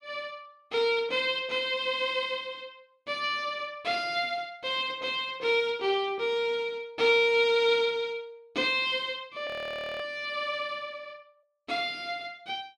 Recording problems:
frozen audio; at 9.5 s for 0.5 s

